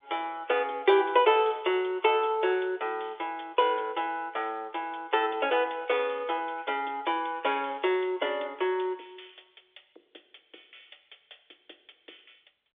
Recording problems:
phone line; 320 Hz to 3.7 kHz, G.711

